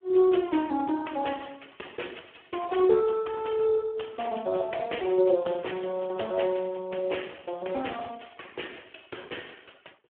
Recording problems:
telephone audio; 280 Hz to 3.3 kHz, Speex

